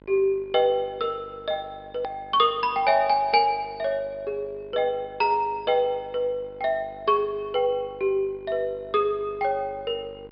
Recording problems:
treble cut off; nothing above 5.5 kHz
hum; 50 Hz, harmonics up to 1.6 kHz, SNR 24 dB
edit click; at 2 s

